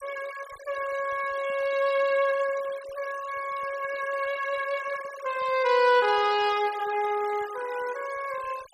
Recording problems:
denoising artefacts; signal-to-artefact ratio 17 dB

